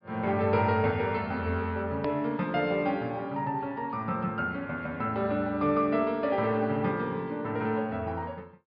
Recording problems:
treble missing; nothing above 5.5 kHz
edit click; at 2 s

